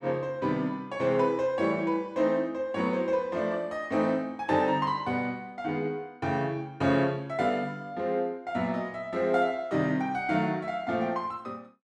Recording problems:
none

